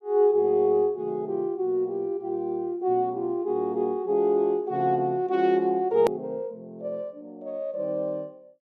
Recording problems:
hard cut with a click; at 6 s

